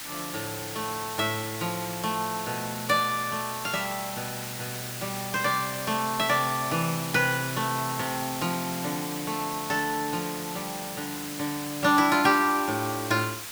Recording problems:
hiss; SNR 7 dB

